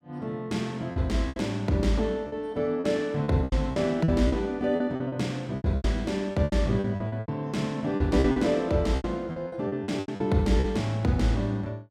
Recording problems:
lost packets; 13% of the sound replaced, filled with repeated pitch periods

